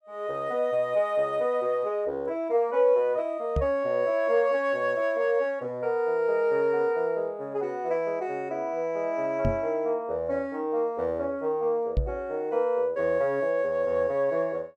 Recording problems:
microphone bump; at 3.5 s, at 9.5 s and at 12 s; peak +4 dB vs average level

